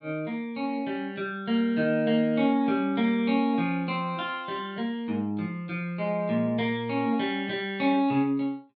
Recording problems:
treble cut off; nothing above 5.5 kHz

